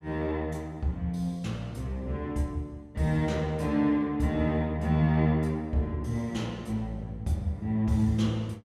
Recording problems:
none

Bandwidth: 15 kHz